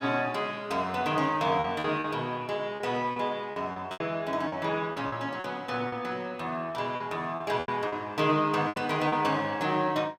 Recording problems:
lost packets; 9% of the sound replaced, filled with repeated pitch periods

